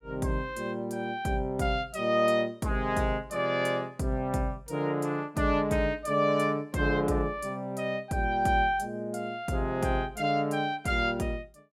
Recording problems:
none

